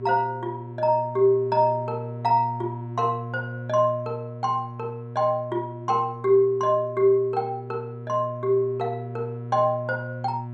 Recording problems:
hum; 60 Hz, harmonics up to 720 Hz, SNR 12 dB

